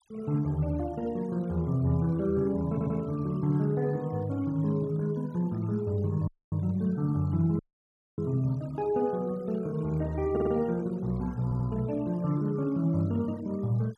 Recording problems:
noise reduction artefacts; signal-to-artefact ratio 26 dB
stutter; at 2.5 s, at 10 s and at 11 s
dropout; at 6.5 s and at 7.5 s for 0.5 s

